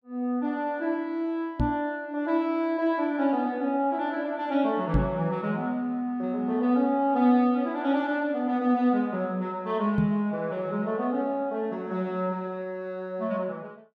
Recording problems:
microphone bump; at 1.5 s, at 5 s and at 10 s; peak +5 dB vs average level

